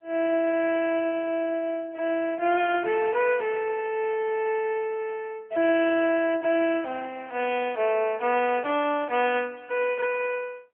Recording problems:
phone line; 280 Hz to 3.3 kHz, AMR-NB

